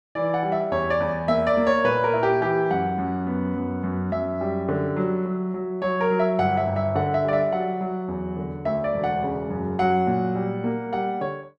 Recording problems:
none

